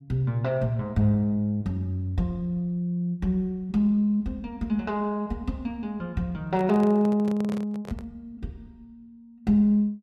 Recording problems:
handling noise; from 6.5 to 8 s; peak -7 dB vs average level

